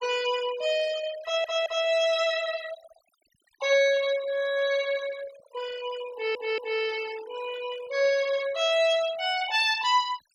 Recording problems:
denoising artefacts; signal-to-artefact ratio 17 dB
stutter; at 1 s and at 6 s

